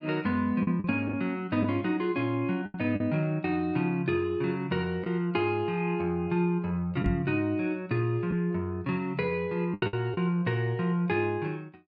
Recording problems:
packet loss; 4% of the sound replaced, filled with the last packet
microphone thump; at 7 s; peak +4 dB vs average level

